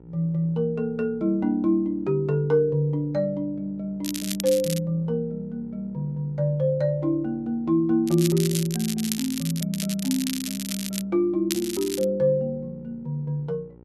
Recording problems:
electrical hum; 60 Hz, harmonics up to 960 Hz, SNR 25 dB
crackle; 4 times, first at 4 s; loose cable, SNR 7 dB

